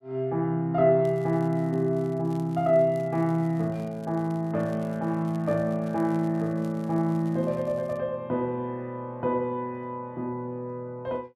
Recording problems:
crackling; from 1 to 8 s; loose cable, SNR 30 dB

